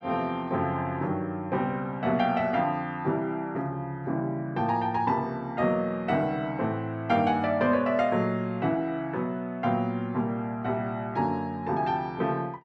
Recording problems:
none

